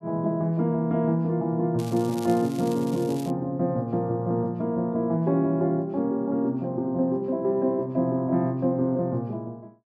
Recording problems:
crackling; from 2 to 3.5 s; loose cable, SNR 19 dB

